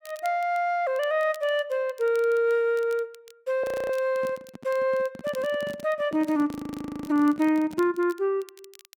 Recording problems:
crackling; vinyl, SNR 26 dB
audio freezing; at 3.5 s and at 6.5 s for 0.5 s
handling noise; from 4 to 8 s; peak -10 dB vs average level

